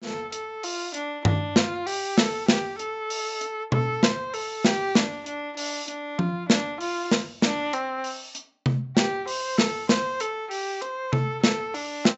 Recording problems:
treble cut off; nothing above 7.6 kHz

